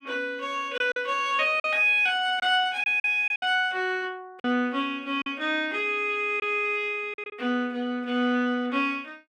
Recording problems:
packet loss; 5% of the sound replaced, filled with silence

